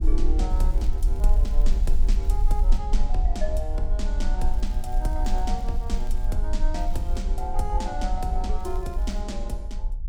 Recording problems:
rumble; below 42 Hz, strongest tone 20 Hz, SNR -6 dB
crackling; 4 times, first at 0.5 s; loose cable, SNR 22 dB

